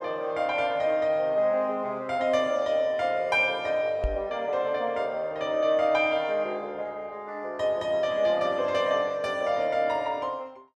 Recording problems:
microphone bump; at 4 s; peak 0 dB vs average level

